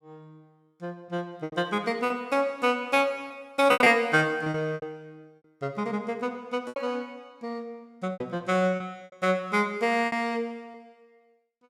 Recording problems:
lost packets; 9% of the sound replaced, filled with repeated pitch periods

